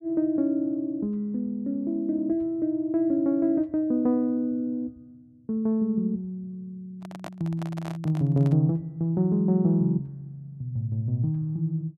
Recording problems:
microphone handling noise; from 7 to 8.5 s; peak -8 dB vs average level

